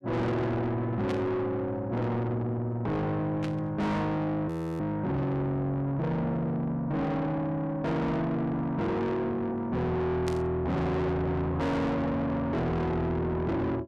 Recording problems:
distortion; soft clipping, signal-to-distortion ratio 6 dB
burst of static; at 1 s, at 3.5 s and at 10 s; peak -6 dB vs average level
audio freezing; at 4.5 s

